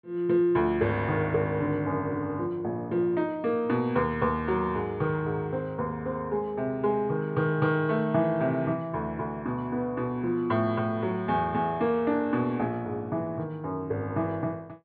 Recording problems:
low-pass filter; nothing above 4.6 kHz

